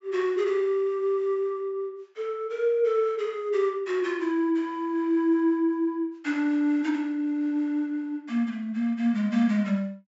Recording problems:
treble cut off; nothing above 8 kHz

